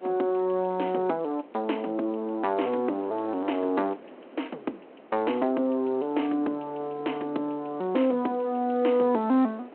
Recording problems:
telephone audio; 220 Hz to 3.4 kHz, G.726
wind on the microphone; below 730 Hz, SNR 21 dB

